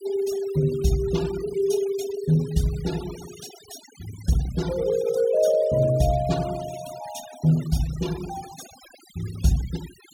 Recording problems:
denoising artefacts; signal-to-artefact ratio 17 dB

